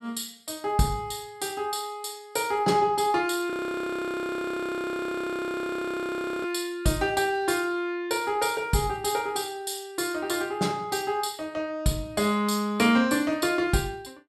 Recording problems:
frozen audio; at 3.5 s for 3 s

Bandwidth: 13 kHz